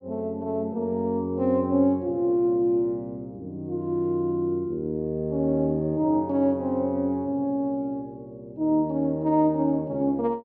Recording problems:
none

